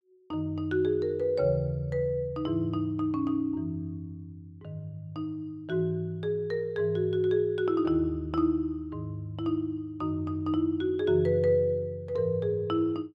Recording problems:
none

